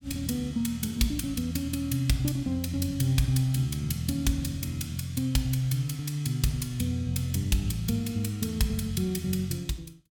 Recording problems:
none

